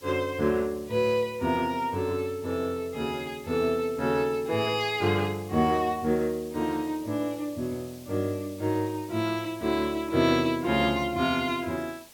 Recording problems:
hiss; SNR 22 dB

